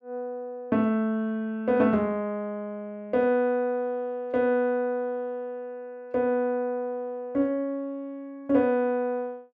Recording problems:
none

